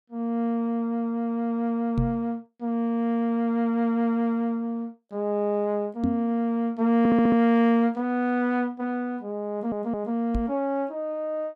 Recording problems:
microphone thump; at 2 s, at 6 s and at 10 s; peak +3 dB vs average level
audio stuttering; at 7 s and at 9.5 s

